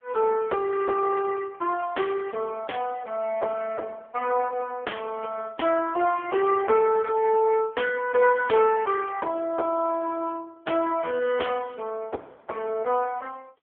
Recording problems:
phone line; 320 Hz to 3.3 kHz, AMR-NB

